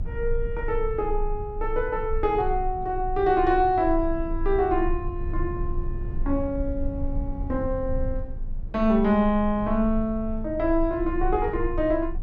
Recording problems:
low-frequency rumble; below 50 Hz, strongest tone 24 Hz, SNR 8 dB

